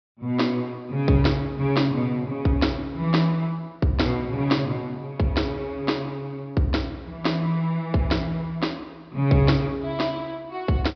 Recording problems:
treble missing; nothing above 5.5 kHz

